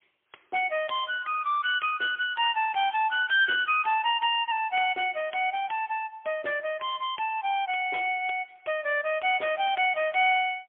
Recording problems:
phone line; 320 Hz to 3.4 kHz, AMR-NB, then MP3

